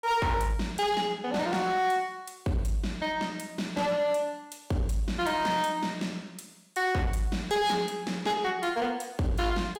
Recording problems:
distorted audio; hard clipping, signal-to-distortion ratio 11 dB

